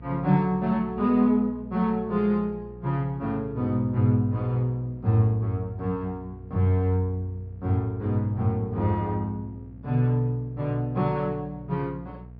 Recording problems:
treble cut off; nothing above 5.5 kHz
mains hum; 60 Hz, harmonics up to 660 Hz, SNR 19 dB

